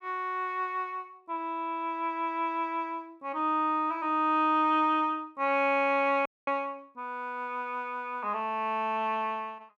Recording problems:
audio cutting out; at 6.5 s

